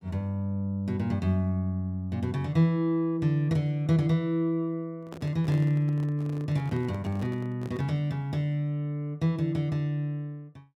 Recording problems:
handling noise; from 5 to 8 s; peak -8 dB vs average level

